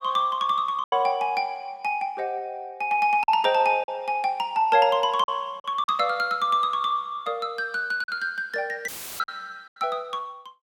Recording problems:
packet loss; 4% of the sound replaced, filled with silence
audio cutting out; at 9 s; filled with static

